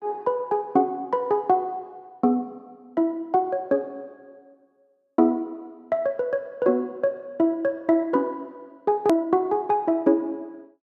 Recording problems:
click at an edit; at 9 s

